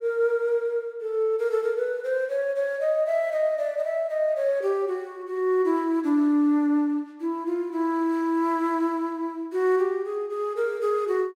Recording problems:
none

